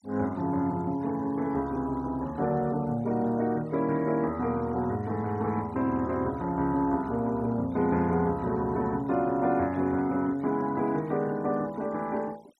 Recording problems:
denoising artefacts; signal-to-artefact ratio 25 dB

